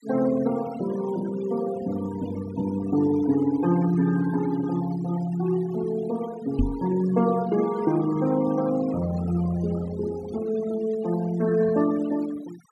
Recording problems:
noise reduction artefacts; signal-to-artefact ratio 17 dB
microphone thump; at 6.5 s; peak +5 dB vs average level

